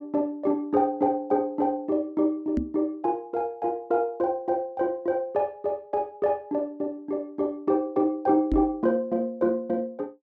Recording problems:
microphone thump; at 2.5 s and at 8.5 s; peak +3 dB vs average level

